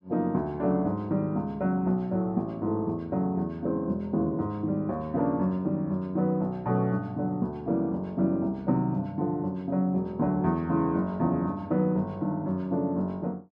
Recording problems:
none

